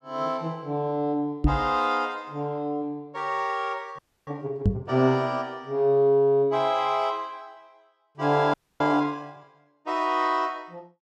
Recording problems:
knock on the microphone; at 1.5 s and at 4.5 s; peak +7 dB vs average level
audio freezing; at 4 s and at 8.5 s

